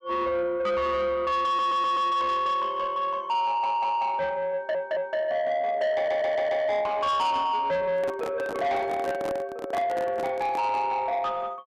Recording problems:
distortion; soft clipping, signal-to-distortion ratio 11 dB
audio stuttering; 4 times, first at 1.5 s
microphone handling noise; from 8 to 11 s; peak -2 dB vs average level

